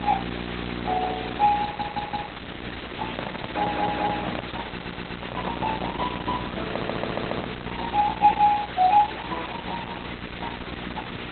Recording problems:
lossy compression; Opus, log-spectral distance 21 dB, nothing above 4 kHz
hum; 60 Hz, harmonics up to 1.6 kHz, SNR 11 dB
background hiss; SNR 10 dB
audio stuttering; 4 times, first at 1.5 s
microphone handling noise; from 3 to 8 s; peak +1 dB vs average level

